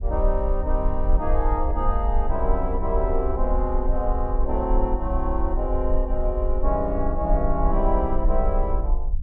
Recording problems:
low-frequency rumble; below 48 Hz, SNR 0 dB

